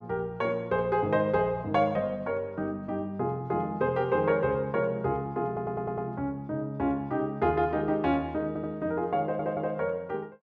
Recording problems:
stutter; at 5.5 s, at 8.5 s and at 9 s

